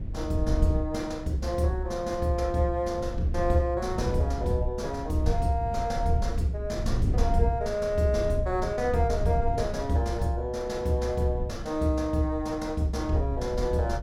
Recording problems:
low-frequency rumble; below 96 Hz, SNR 7 dB

